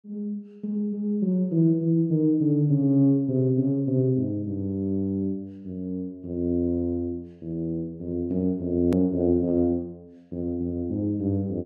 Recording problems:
edit click; at 9 s

